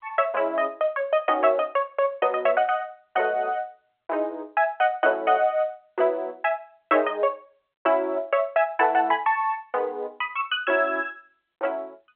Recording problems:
telephone audio; 340 Hz to 3.3 kHz, G.711

